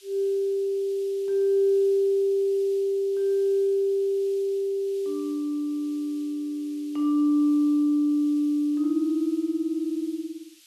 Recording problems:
background hiss; SNR 27 dB

